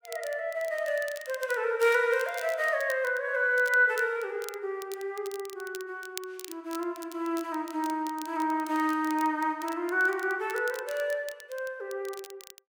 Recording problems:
crackle; vinyl, SNR 18 dB

